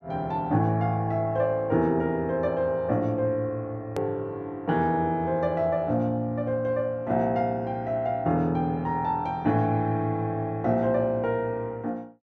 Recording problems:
edit click; at 4 s

